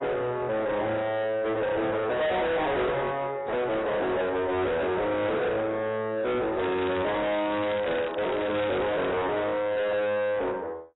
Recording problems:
lossy codec; AAC, log-spectral distance 3 dB, nothing above 3.8 kHz
distortion; soft clipping, signal-to-distortion ratio 6 dB
crackling; from 6.5 to 9 s; loose cable, SNR 11 dB

